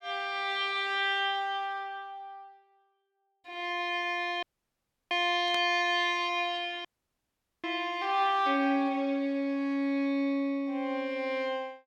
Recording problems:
audio cutting out; at 4.5 s for 0.5 s and at 7 s for 1 s
burst of static; at 5.5 s; peak -6 dB vs average level

